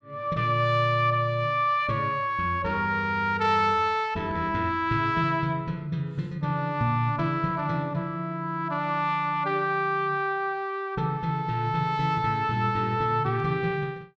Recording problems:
none

